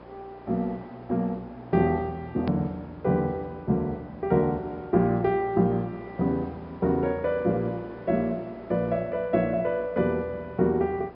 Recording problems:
treble missing; nothing above 5.5 kHz
hum; 60 Hz, harmonics up to 1.3 kHz, SNR 24 dB
hiss; SNR 22 dB
hard cut with a click; at 2.5 s

